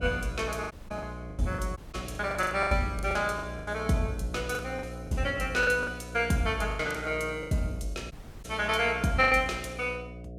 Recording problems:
hum; 60 Hz, harmonics up to 720 Hz, SNR 12 dB
packet loss; 13% of the sound replaced, filled with the last packet
dropout; at 0.5 s, at 2 s and at 8 s

